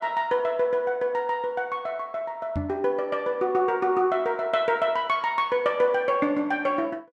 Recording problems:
microphone bump; at 2.5 s; peak -2 dB vs average level

